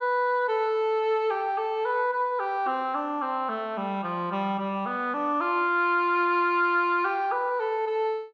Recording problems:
none

